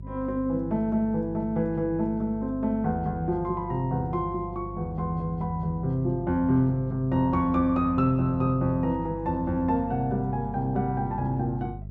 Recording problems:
electrical hum; 50 Hz, harmonics up to 400 Hz, SNR 13 dB

